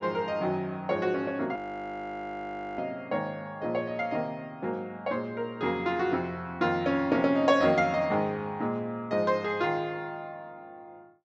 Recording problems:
low-pass filter; nothing above 8 kHz
frozen audio; at 1.5 s for 1 s

